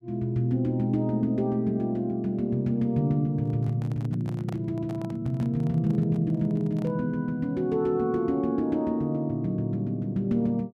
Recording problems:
handling noise; from 3.5 to 7 s; peak -11 dB vs average level

